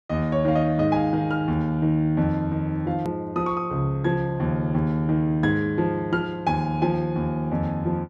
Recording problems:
click at an edit; at 3 s

